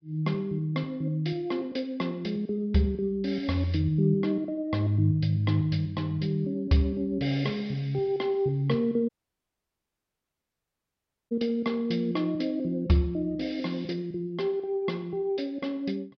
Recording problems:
low-pass filter; nothing above 5.5 kHz
dropout; at 9 s for 2 s

